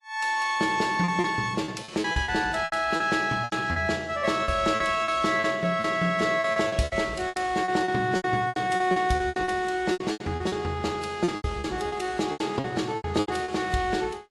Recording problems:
lossy codec; AAC, log-spectral distance 2 dB, nothing above 11.3 kHz
lost packets; 16% of the sound replaced, filled with repeated pitch periods

